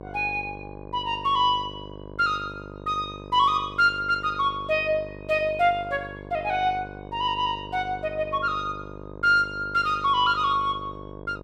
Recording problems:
electrical hum; 50 Hz, harmonics up to 1.2 kHz, SNR 16 dB

